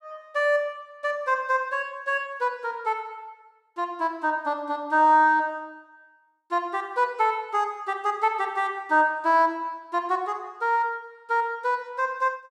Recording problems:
none

